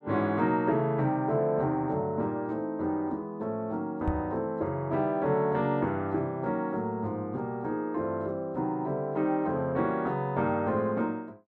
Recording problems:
knock on the microphone; at 4 s; peak +2 dB vs average level

